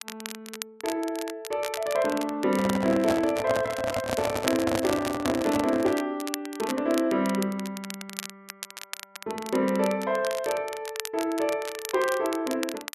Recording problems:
crackling; vinyl, SNR 11 dB
microphone handling noise; from 2.5 to 6 s; peak +3 dB vs average level

